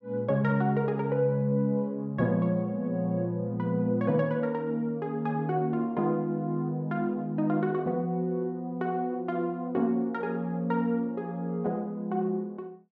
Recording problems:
none

